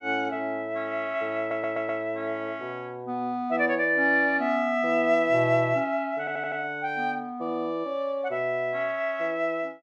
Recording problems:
stutter; at 1.5 s and at 6 s

